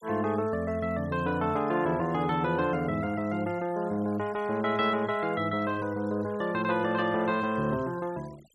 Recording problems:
noise reduction artefacts; signal-to-artefact ratio 23 dB

